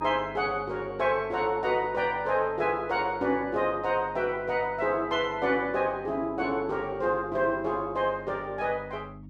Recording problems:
hum; 50 Hz, harmonics up to 300 Hz, SNR 19 dB

